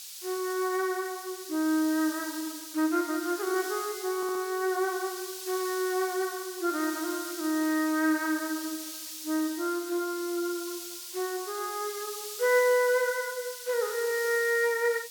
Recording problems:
background hiss; SNR 9 dB
stutter; at 4 s

